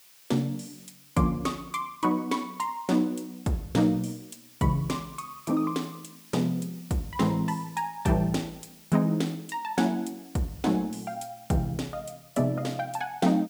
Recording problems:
background hiss; slope +2 dB per octave, SNR 23 dB

